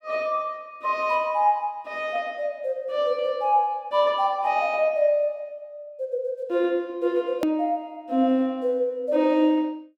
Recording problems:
edit click; at 7.5 s

